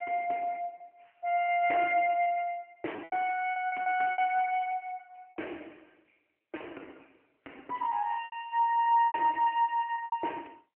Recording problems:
phone line; 260 Hz to 3 kHz, AMR-NB
packet loss; 8% of the sound replaced, filled with repeated pitch periods

